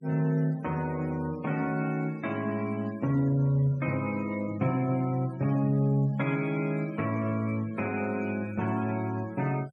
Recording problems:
noise reduction artefacts; signal-to-artefact ratio 23 dB

